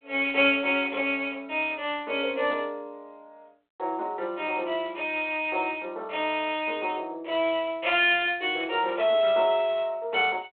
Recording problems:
phone line; 300 Hz to 3.5 kHz, G.726

